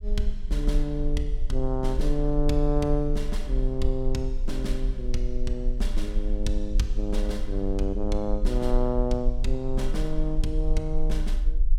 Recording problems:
low-frequency rumble; below 40 Hz, strongest tone 20 Hz, SNR 1 dB

